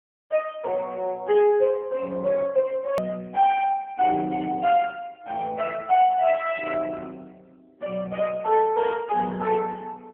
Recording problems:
telephone audio; 220 Hz to 3.3 kHz, AMR-NB
hard cut with a click; at 3 s

